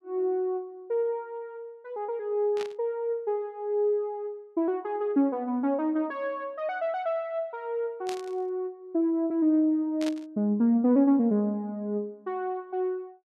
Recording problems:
static burst; at 2.5 s, at 8 s and at 10 s; peak -6 dB vs average level

